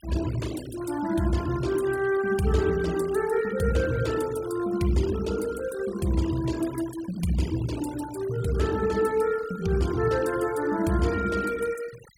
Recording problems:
noise reduction artefacts; signal-to-artefact ratio 17 dB

